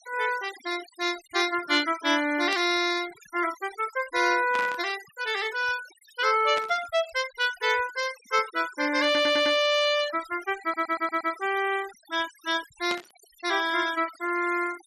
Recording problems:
denoising artefacts; signal-to-artefact ratio 16 dB
burst of static; 4 times, first at 2.5 s; peak -4 dB vs average level
stutter; at 9 s and at 11 s

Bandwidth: 13.5 kHz